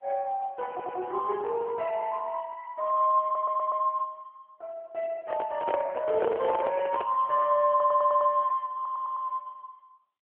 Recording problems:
phone line; 110 Hz to 3.1 kHz, AMR-NB
audio stuttering; 4 times, first at 0.5 s
microphone handling noise; from 5 to 7 s; peak 0 dB vs average level

